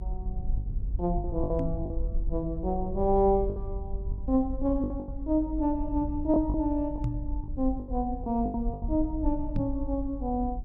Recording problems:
low-frequency rumble; below 56 Hz, SNR 6 dB
lost packets; 8% of the sound replaced, filled with the last packet
microphone bump; at 1.5 s, at 7 s and at 9.5 s; peak +2 dB vs average level

